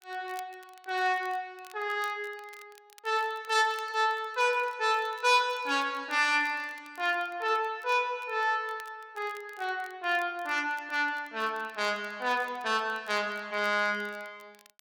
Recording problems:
crackling; vinyl, SNR 27 dB

